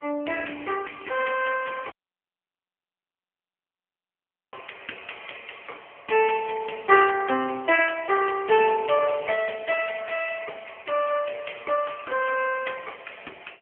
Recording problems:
telephone audio; 260 Hz to 3.2 kHz, AMR-NB
dropout; at 2 s for 2.5 s

